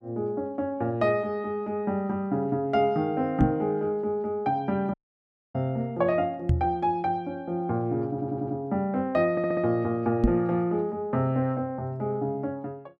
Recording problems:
microphone bump; at 3.5 s, at 6.5 s and at 10 s; peak +8 dB vs average level
dropout; at 5 s for 0.5 s
audio stuttering; at 8 s and at 9.5 s

